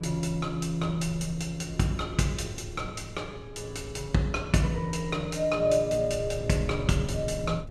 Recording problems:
wind noise; below 120 Hz, SNR 15 dB

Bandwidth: 13.5 kHz